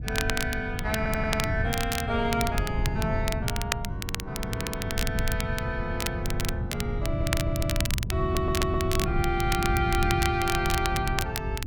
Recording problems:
wind noise; below 140 Hz, SNR 1 dB
crackling; vinyl, SNR 4 dB
stutter; 4 times, first at 1 s

